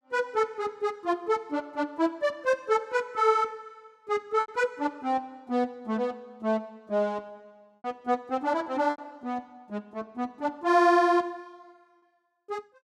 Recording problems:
packet loss; 2% of the sound replaced, filled with repeated pitch periods

